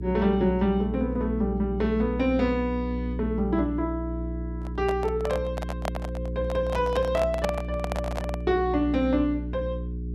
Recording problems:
hum; 60 Hz, harmonics up to 420 Hz, SNR 6 dB
microphone handling noise; from 4.5 to 8.5 s; peak +2 dB vs average level

